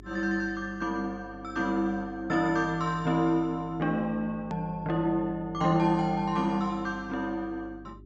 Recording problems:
treble cut off; nothing above 8 kHz
hum; 50 Hz, harmonics up to 400 Hz, SNR 20 dB
hard cut with a click; at 4.5 s

